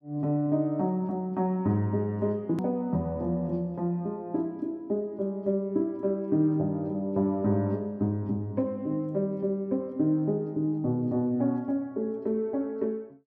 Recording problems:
edit click; at 2.5 s

